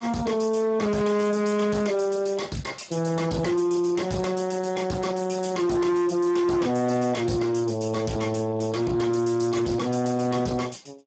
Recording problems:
lossy compression; Speex, log-spectral distance 5 dB, nothing above 7.8 kHz
distortion; hard clipping, signal-to-distortion ratio 7 dB

